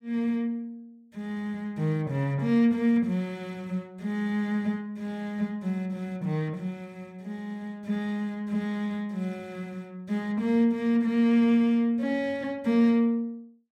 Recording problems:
none

